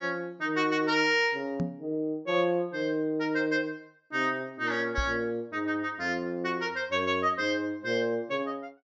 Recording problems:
treble cut off; nothing above 8 kHz
microphone thump; at 1.5 s and at 5 s; peak +1 dB vs average level

